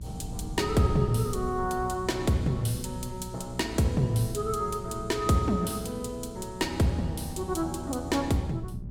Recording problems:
hum; 60 Hz, harmonics up to 600 Hz, SNR 15 dB
rumble; below 150 Hz, SNR 14 dB

